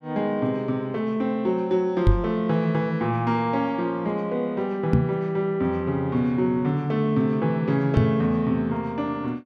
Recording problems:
microphone thump; at 2 s, at 5 s and at 8 s; peak +8 dB vs average level

